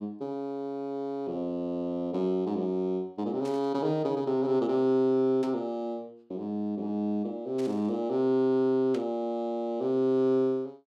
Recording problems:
burst of static; 4 times, first at 3.5 s; peak -12 dB vs average level

